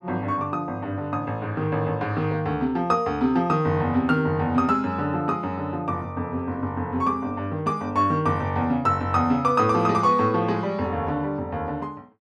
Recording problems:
none

